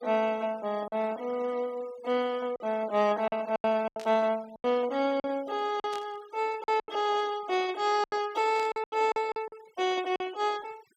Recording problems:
noise reduction artefacts; signal-to-artefact ratio 21 dB
packet loss; 9% of the sound replaced, filled with silence
static burst; at 4 s, at 6 s and at 8.5 s; peak -11 dB vs average level

